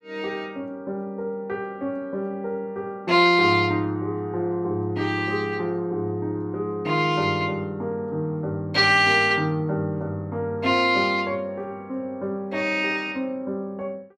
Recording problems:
none

